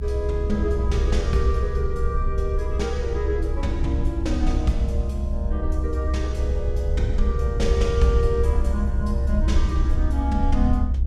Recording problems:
rumble; below 66 Hz, SNR -3 dB

